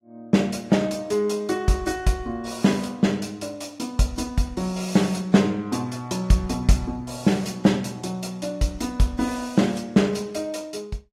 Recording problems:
lossy codec; AAC, log-spectral distance 3 dB, nothing above 13.8 kHz

